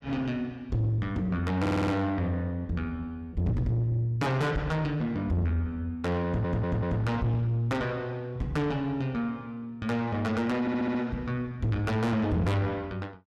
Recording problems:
distortion; soft clipping, signal-to-distortion ratio 7 dB
audio stuttering; at 1.5 s, at 6.5 s and at 11 s

